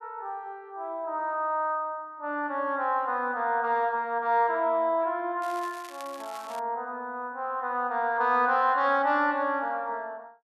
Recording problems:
crackle; from 5.5 to 6.5 s; loose cable, SNR 20 dB

